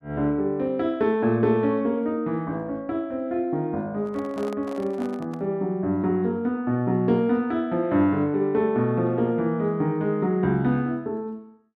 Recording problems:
handling noise; from 4 to 5.5 s; peak -10 dB vs average level

